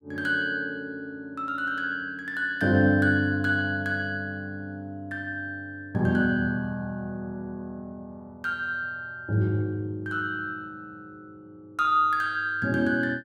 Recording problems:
none

